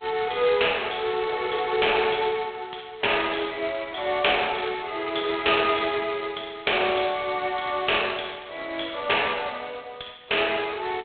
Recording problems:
phone line; 370 Hz to 3.6 kHz, G.726

